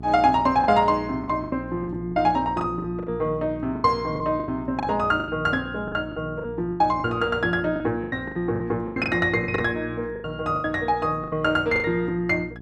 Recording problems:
electrical hum; 60 Hz, harmonics up to 780 Hz, SNR 15 dB
lost packets; 14% of the sound replaced, filled with the last packet

